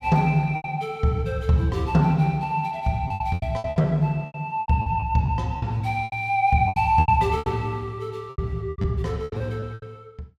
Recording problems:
packet loss; 14% of the sound replaced, filled with repeated pitch periods

